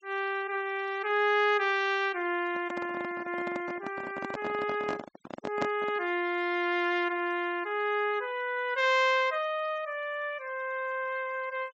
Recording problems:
treble missing; nothing above 7.9 kHz
denoising artefacts; signal-to-artefact ratio 25 dB
handling noise; from 2.5 to 6 s; peak +1 dB vs average level

